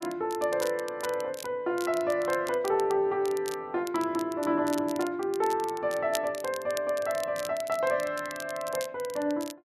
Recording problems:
crackle; vinyl, SNR 15 dB

